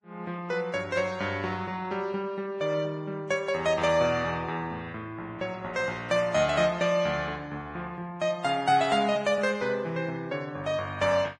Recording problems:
lossy compression; Vorbis, log-spectral distance 2 dB

